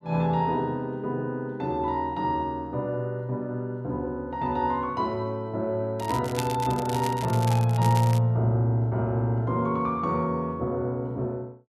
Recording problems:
crackling; from 6 to 8 s; loose cable, SNR 13 dB

